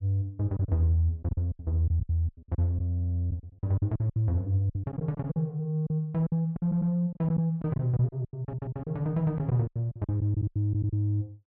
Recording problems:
packet loss; 16% of the sound replaced, filled with silence
audio stuttering; at 3 s, at 6.5 s and at 8.5 s

